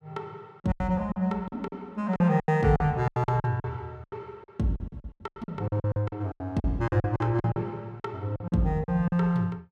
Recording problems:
lost packets; 17% of the sound replaced, filled with silence

